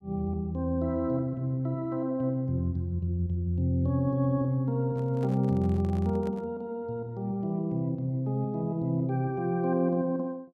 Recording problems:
microphone handling noise; from 5 to 6.5 s; peak -11 dB vs average level

